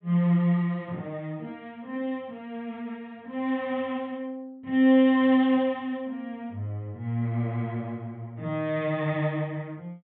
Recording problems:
treble cut off; nothing above 4 kHz

